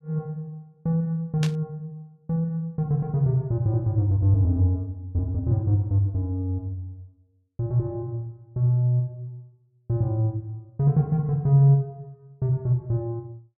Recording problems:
burst of static; at 1.5 s; peak -4 dB vs average level

